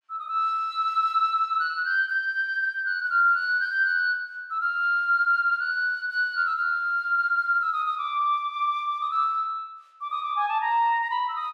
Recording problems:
none

